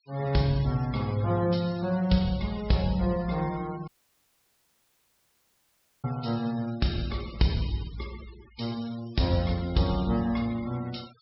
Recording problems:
low-pass filter; nothing above 5.4 kHz
noise reduction artefacts; signal-to-artefact ratio 20 dB
dropout; at 4 s for 2 s

